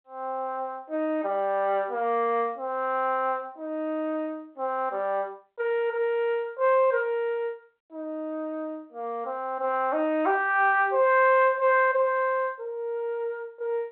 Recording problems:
telephone audio; 260 Hz to 3.9 kHz, G.726

